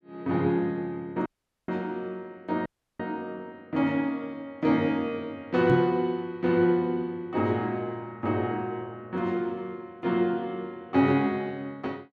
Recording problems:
audio cutting out; at 1.5 s and at 2.5 s
microphone bump; at 5.5 s; peak +5 dB vs average level

